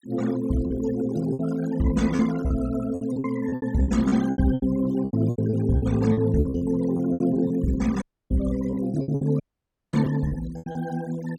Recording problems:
denoising artefacts; signal-to-artefact ratio 19 dB
lost packets; 14% of the sound replaced, filled with repeated pitch periods
audio cutting out; at 8 s and at 9.5 s for 0.5 s

